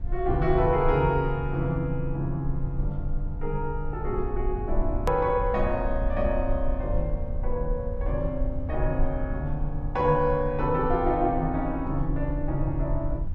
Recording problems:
low-frequency rumble; below 56 Hz, strongest tone 20 Hz, SNR 6 dB
click at an edit; at 5 s

